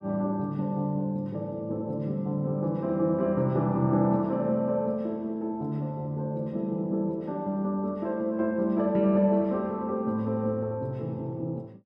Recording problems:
none

